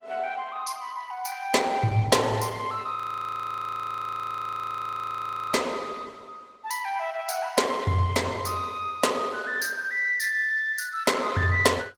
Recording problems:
lossy codec; Opus, log-spectral distance 4 dB, nothing above 20.1 kHz
audio freezing; at 3 s for 2.5 s

